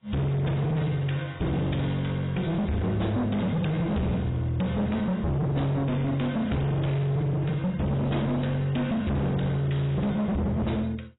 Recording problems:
codec artefacts; AAC, log-spectral distance 2 dB, nothing above 3.8 kHz
distortion; hard clipping, signal-to-distortion ratio 6 dB

